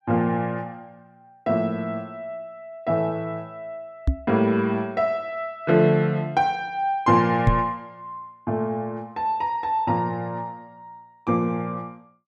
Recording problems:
microphone bump; at 4 s and at 7.5 s; peak +8 dB vs average level

